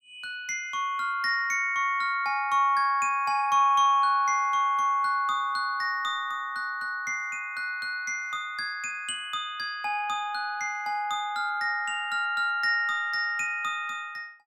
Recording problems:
none

